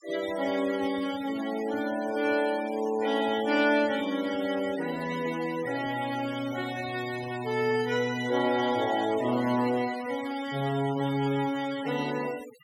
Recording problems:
denoising artefacts; signal-to-artefact ratio 15 dB

